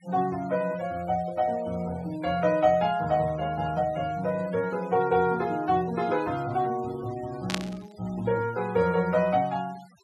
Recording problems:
denoising artefacts; signal-to-artefact ratio 22 dB
burst of static; at 7.5 s; peak +3 dB vs average level

